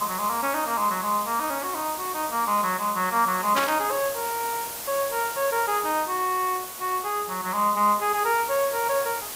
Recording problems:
hiss; slope -2 dB per octave, SNR 8 dB
static burst; at 3.5 s; peak +2 dB vs average level

